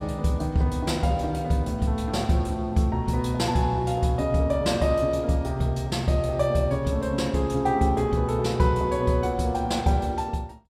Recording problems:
none

